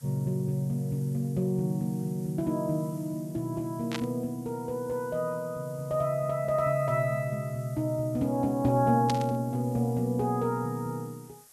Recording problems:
background hiss; SNR 23 dB
static burst; at 4 s and at 9 s; peak -1 dB vs average level

